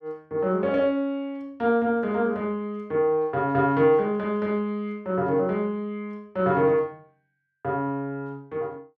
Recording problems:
none

